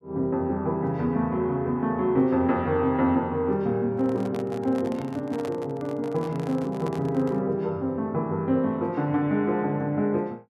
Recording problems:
handling noise; from 4 to 7.5 s; peak -8 dB vs average level

